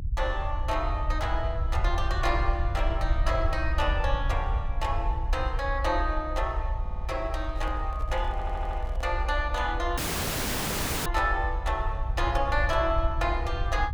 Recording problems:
rumble; below 62 Hz, SNR 1 dB
audio stuttering; at 7 s and at 8.5 s
microphone handling noise; from 7.5 to 9 s; peak -11 dB vs average level
dropout; at 10 s for 1 s

